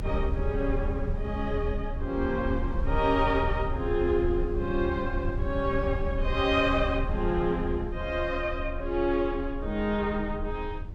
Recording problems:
rumble; below 80 Hz, strongest tone 28 Hz, SNR 5 dB

